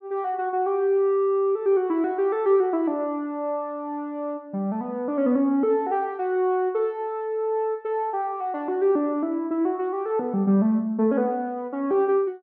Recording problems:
none

